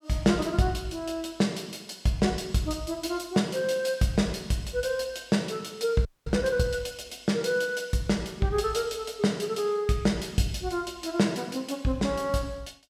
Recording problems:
audio freezing; at 6 s

